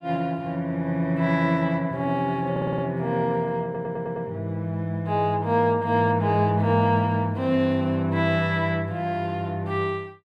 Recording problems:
stutter; at 2.5 s and at 3.5 s

